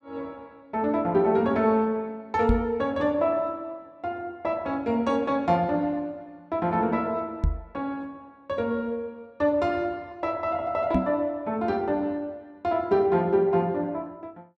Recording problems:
knock on the microphone; at 2.5 s, at 7.5 s and at 11 s; peak +5 dB vs average level

